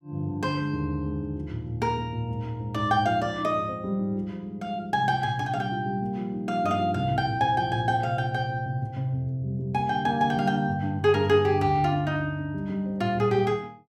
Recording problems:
none

